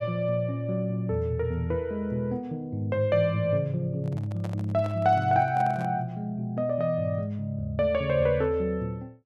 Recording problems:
handling noise; from 4 to 6 s; peak -10 dB vs average level

